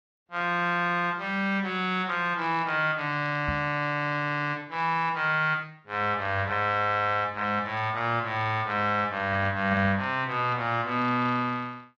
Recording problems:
lossy compression; AAC, log-spectral distance 2 dB
knock on the microphone; at 3.5 s; peak -3 dB vs average level

